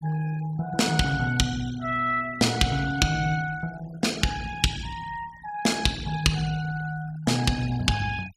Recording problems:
denoising artefacts; signal-to-artefact ratio 18 dB

